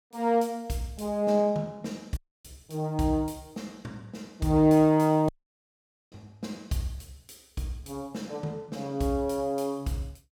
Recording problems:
audio cutting out; at 2 s and at 5.5 s for 1 s

